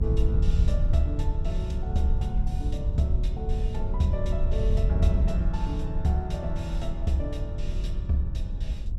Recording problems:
low-frequency rumble; below 72 Hz, SNR 13 dB
wind on the microphone; below 72 Hz, SNR -2 dB

